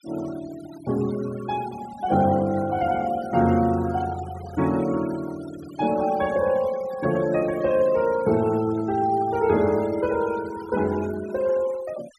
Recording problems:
denoising artefacts; signal-to-artefact ratio 18 dB

